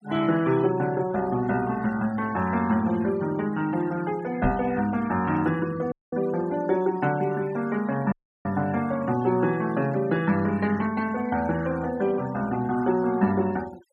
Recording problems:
noise reduction artefacts; signal-to-artefact ratio 19 dB
microphone bump; at 4.5 s; peak +2 dB vs average level
dropout; at 6 s and at 8 s

